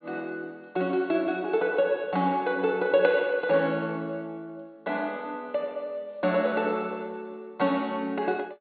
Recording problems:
treble cut off; nothing above 4.4 kHz

